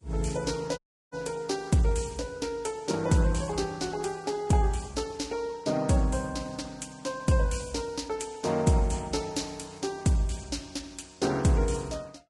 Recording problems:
lossy codec; Vorbis, then Vorbis, log-spectral distance 4 dB, nothing above 10.7 kHz
dropout; at 1 s

